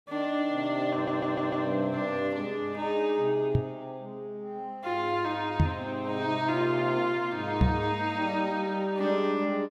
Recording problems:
audio stuttering; at 1 s
microphone thump; at 3.5 s, at 5.5 s and at 7.5 s; peak +9 dB vs average level

